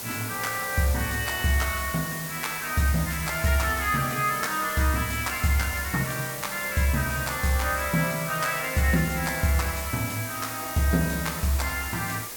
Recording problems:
background hiss; slope -1 dB per octave, SNR 7 dB

